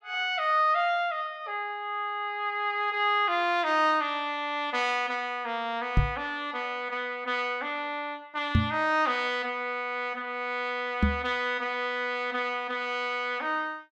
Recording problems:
microphone bump; at 6 s, at 8.5 s and at 11 s; peak +8 dB vs average level

